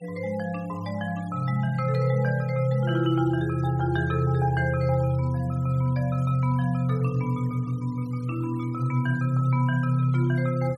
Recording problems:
noise reduction artefacts; signal-to-artefact ratio 26 dB

